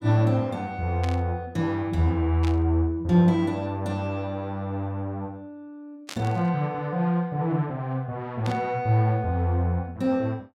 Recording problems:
static burst; 4 times, first at 1 s; peak -6 dB vs average level

